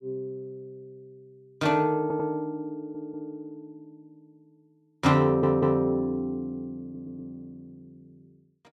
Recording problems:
audio stuttering; 4 times, first at 2 s

